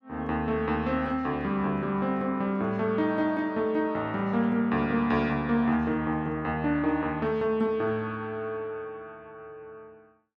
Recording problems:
none

